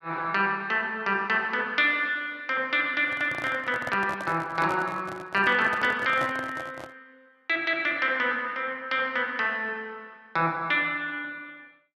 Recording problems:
microphone handling noise; from 3 to 7 s; peak -5 dB vs average level

